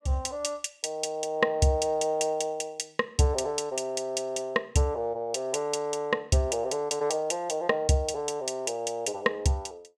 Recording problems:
none

